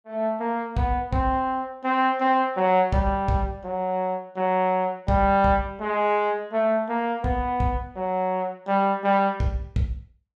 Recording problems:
none

